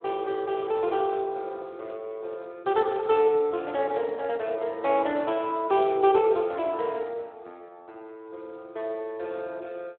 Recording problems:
telephone audio; 340 Hz to 3.5 kHz, Speex

